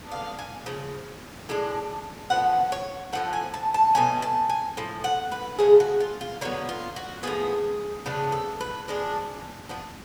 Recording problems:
hiss; slope -4 dB per octave, SNR 17 dB

